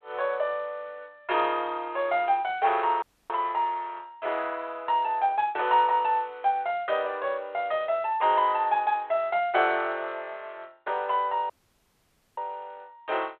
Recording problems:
phone line; 340 Hz to 3.6 kHz, G.726
audio cutting out; at 3 s and at 12 s for 1 s

